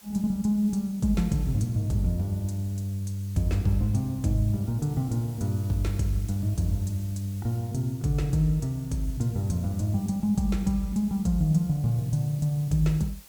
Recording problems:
hiss; slope 0 dB per octave, SNR 23 dB

